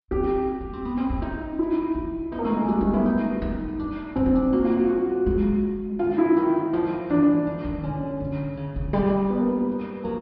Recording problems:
low-pass filter; nothing above 5.5 kHz

